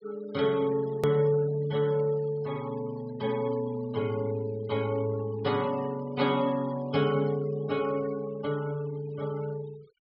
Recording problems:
treble cut off; nothing above 5.5 kHz
noise reduction artefacts; signal-to-artefact ratio 21 dB
click at an edit; at 1 s

